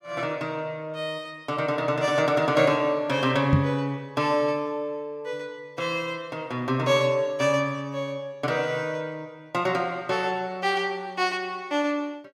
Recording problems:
knock on the microphone; at 3.5 s; peak +8 dB vs average level

